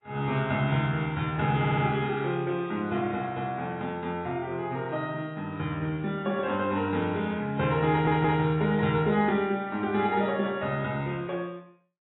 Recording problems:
lossy compression; AAC, log-spectral distance 2 dB, nothing above 3.6 kHz
stutter; at 1.5 s and at 8 s

